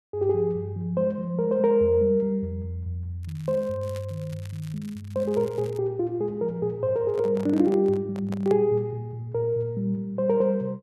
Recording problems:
crackle; from 3 to 6 s; loose cable, SNR 26 dB
handling noise; from 7 to 8.5 s; peak -8 dB vs average level

